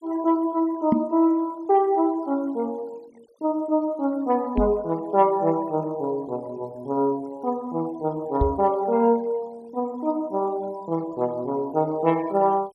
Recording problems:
noise reduction artefacts; signal-to-artefact ratio 27 dB
microphone thump; at 1 s, at 4.5 s and at 8.5 s; peak +6 dB vs average level

